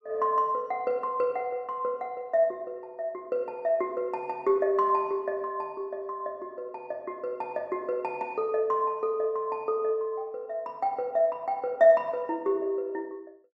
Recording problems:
none

